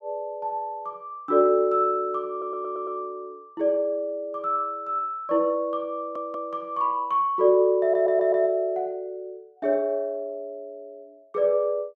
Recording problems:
stutter; at 2.5 s, at 6 s and at 8 s

